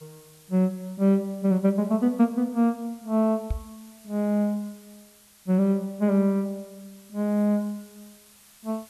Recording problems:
hiss; slope +1 dB per octave, SNR 27 dB
microphone thump; at 3.5 s; peak -1 dB vs average level

